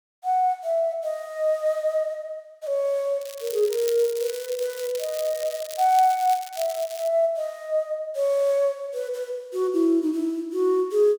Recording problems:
crackle; from 3 to 7 s; loose cable, SNR 14 dB

